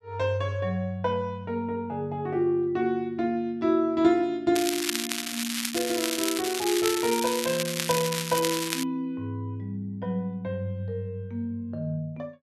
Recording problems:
crackling; from 4.5 to 9 s; loose cable, SNR 2 dB

